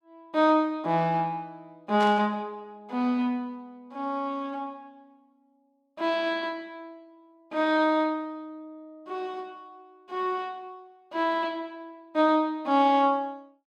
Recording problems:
burst of static; at 2 s; peak -7 dB vs average level

